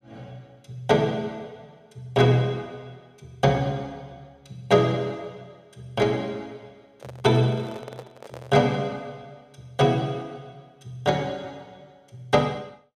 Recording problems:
handling noise; from 7 to 8.5 s; peak -11 dB vs average level

